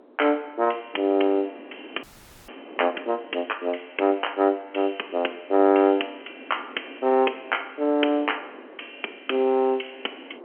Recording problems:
telephone audio; 220 Hz to 3.2 kHz, G.711
wind noise; below 630 Hz, SNR 23 dB
audio freezing; at 2 s

